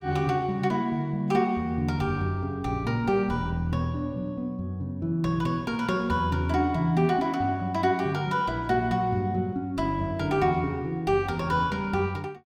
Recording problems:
none

